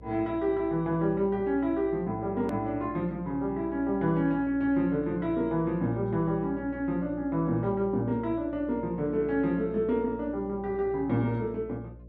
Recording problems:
electrical hum; 60 Hz, harmonics up to 600 Hz, SNR 19 dB
hard cut with a click; at 2.5 s

